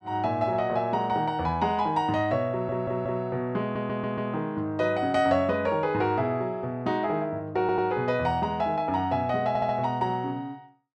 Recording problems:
stutter; 4 times, first at 2.5 s

